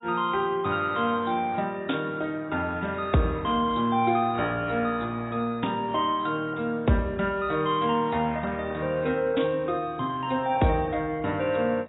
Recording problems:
lossy compression; AAC, log-spectral distance 4 dB, nothing above 3.2 kHz

